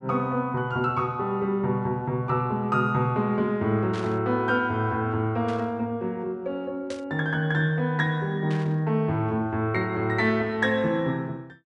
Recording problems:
static burst; 4 times, first at 4 s; peak -10 dB vs average level

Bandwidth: 10.5 kHz